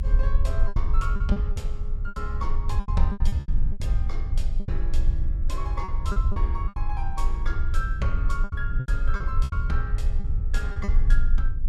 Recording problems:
electrical hum; 60 Hz, harmonics up to 600 Hz, SNR 25 dB
low-frequency rumble; below 52 Hz, strongest tone 20 Hz, SNR -8 dB
lost packets; 11% of the sound replaced, filled with repeated pitch periods

